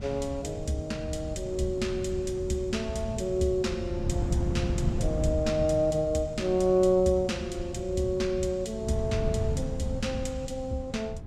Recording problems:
wind noise; below 150 Hz, SNR 6 dB

